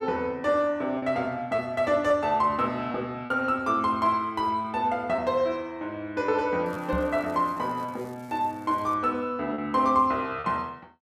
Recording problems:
lost packets; 4% of the sound replaced, filled with repeated pitch periods
crackle; from 6.5 to 9 s; loose cable, SNR 30 dB
knock on the microphone; at 7 s; peak -2 dB vs average level

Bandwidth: 14.5 kHz